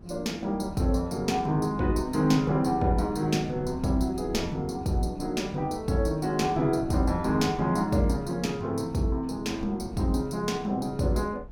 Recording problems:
wind on the microphone; below 180 Hz, SNR 17 dB

